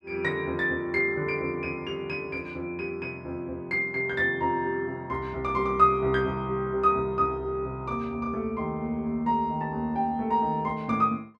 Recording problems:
none

